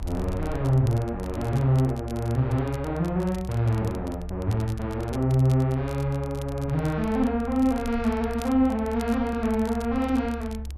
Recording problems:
low-frequency rumble; below 72 Hz, strongest tone 68 Hz, SNR 12 dB
crackling; vinyl, SNR 23 dB

